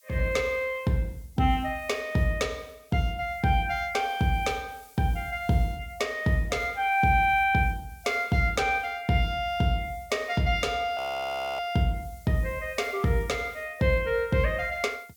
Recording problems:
hiss; slope +4 dB per octave, SNR 27 dB
frozen audio; at 11 s for 0.5 s

